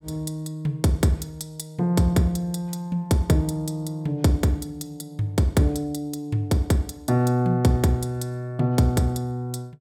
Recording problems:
none

